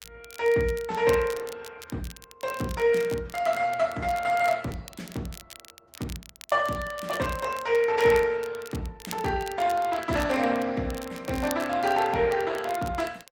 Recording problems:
lossy codec; Opus, log-spectral distance 3 dB, nothing above 16.6 kHz
crackling; vinyl, SNR 18 dB

